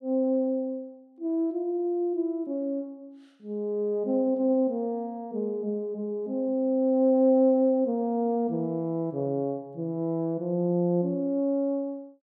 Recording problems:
none

